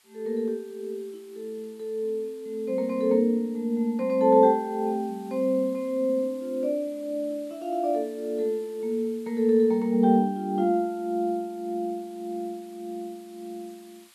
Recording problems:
hiss; SNR 29 dB

